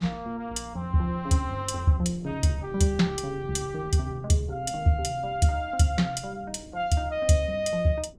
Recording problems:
wind noise; below 270 Hz, SNR 21 dB

